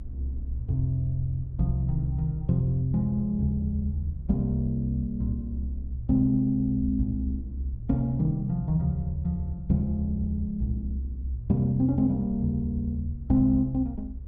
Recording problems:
rumble; below 70 Hz, SNR 13 dB

